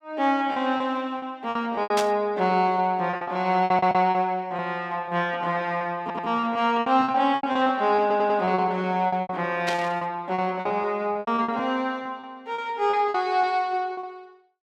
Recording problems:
lost packets; 14% of the sound replaced, filled with repeated pitch periods
static burst; at 2 s and at 9.5 s; peak 0 dB vs average level
audio stuttering; at 3.5 s, at 6 s and at 8 s

